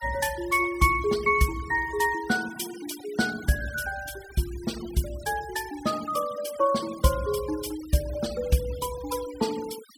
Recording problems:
denoising artefacts; signal-to-artefact ratio 16 dB

